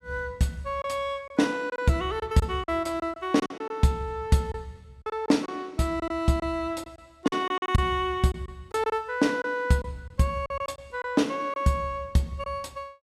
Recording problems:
packet loss; 8% of the sound replaced, filled with silence

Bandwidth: 15 kHz